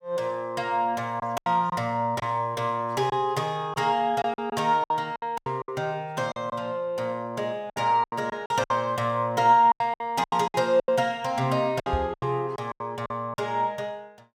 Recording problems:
lost packets; 11% of the sound replaced, filled with silence
microphone thump; at 12 s; peak +1 dB vs average level

